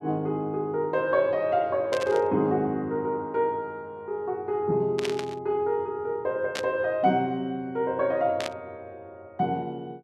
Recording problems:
burst of static; 4 times, first at 2 s; peak -1 dB vs average level

